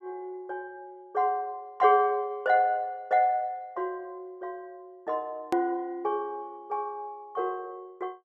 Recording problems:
hard cut with a click; at 5.5 s

